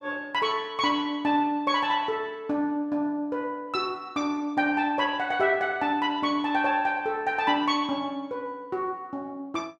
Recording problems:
none

